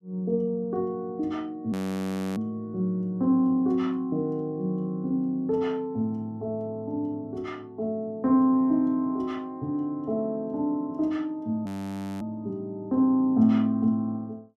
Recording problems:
frozen audio; at 1.5 s for 0.5 s and at 12 s for 0.5 s

